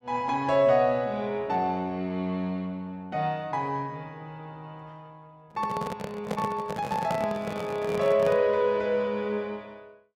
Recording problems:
handling noise; from 5.5 to 8.5 s; peak 0 dB vs average level

